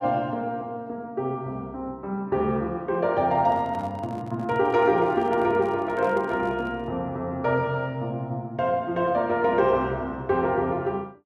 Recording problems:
handling noise; from 3.5 to 7 s; peak -11 dB vs average level

